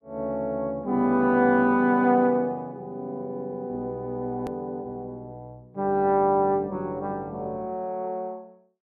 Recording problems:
hard cut with a click; at 4.5 s

